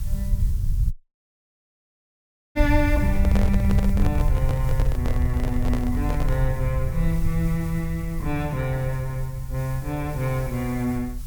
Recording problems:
hiss; slope +1 dB per octave, SNR 19 dB
low-frequency rumble; below 84 Hz, SNR 0 dB
audio cutting out; at 1 s for 1.5 s
handling noise; from 3 to 6.5 s; peak +1 dB vs average level

